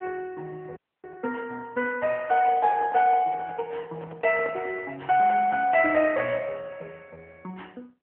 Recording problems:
telephone audio; 220 Hz to 3.3 kHz, AMR-NB
frozen audio; at 1 s
microphone handling noise; from 2.5 to 5 s; peak -7 dB vs average level

